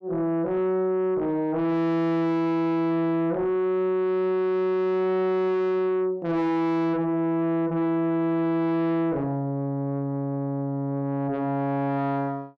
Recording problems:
distorted audio; soft clipping, signal-to-distortion ratio 8 dB

